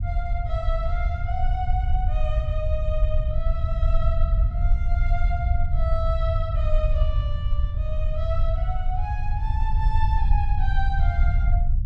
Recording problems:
rumble; below 68 Hz, SNR -8 dB

